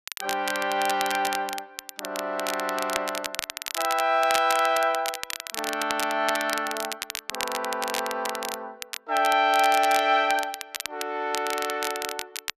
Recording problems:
crackle; vinyl, SNR 8 dB

